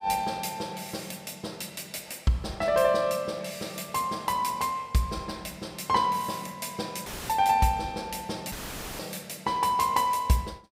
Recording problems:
audio cutting out; at 7 s and at 8.5 s; filled with static

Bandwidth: 15.5 kHz